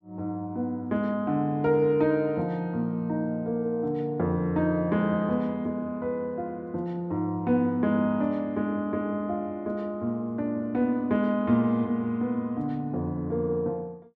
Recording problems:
none

